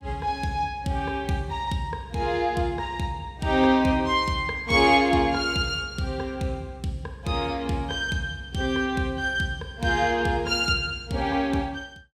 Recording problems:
none

